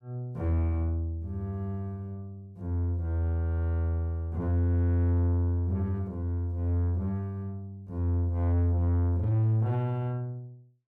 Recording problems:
distorted audio; soft clipping, signal-to-distortion ratio 10 dB

